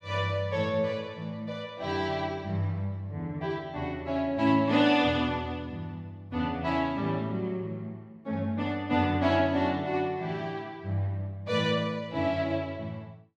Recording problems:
none

